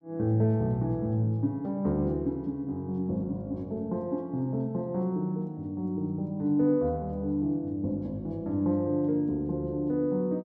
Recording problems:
none

